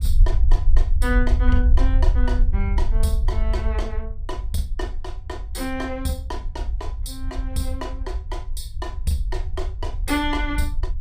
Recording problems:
low-frequency rumble; below 56 Hz, SNR -4 dB

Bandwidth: 15 kHz